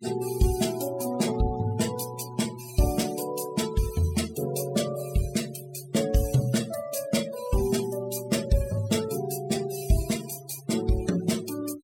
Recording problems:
noise reduction artefacts; signal-to-artefact ratio 13 dB

